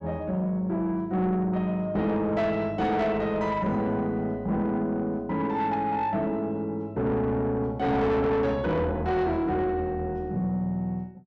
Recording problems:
distortion; soft clipping, signal-to-distortion ratio 10 dB

